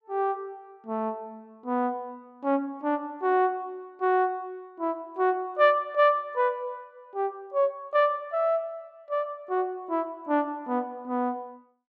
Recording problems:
none

